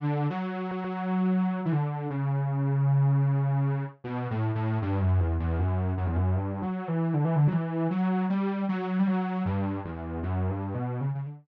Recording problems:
treble missing; nothing above 8 kHz
audio stuttering; at 0.5 s

